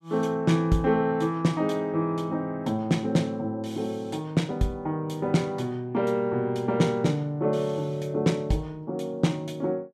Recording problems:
none

